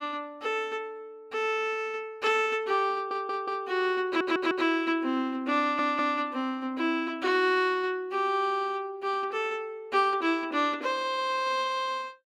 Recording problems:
stutter; at 3 s, at 4 s and at 5.5 s

